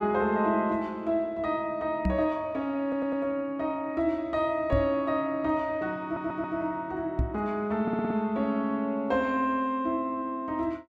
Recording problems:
knock on the microphone; at 2 s, at 4.5 s and at 7 s; peak +4 dB vs average level
stutter; at 3 s, at 6 s and at 8 s

